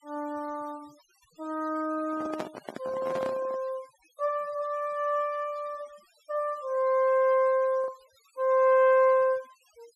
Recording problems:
denoising artefacts; signal-to-artefact ratio 27 dB
lost packets; 0.5% of the sound replaced, filled with the last packet
microphone handling noise; from 2 to 3.5 s; peak -4 dB vs average level

